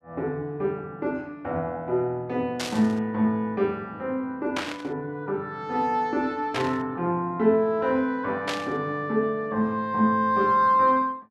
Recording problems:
static burst; 4 times, first at 2.5 s; peak 0 dB vs average level

